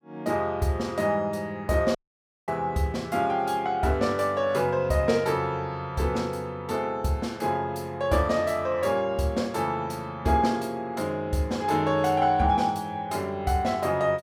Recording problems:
dropout; at 2 s for 0.5 s

